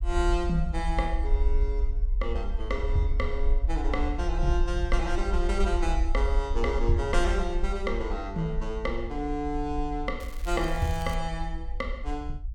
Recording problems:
low-frequency rumble; below 54 Hz, SNR 0 dB
crackling; at 10 s; loose cable, SNR 17 dB

